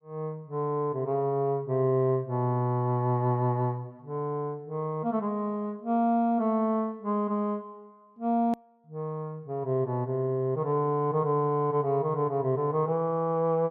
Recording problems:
hard cut with a click; at 8.5 s

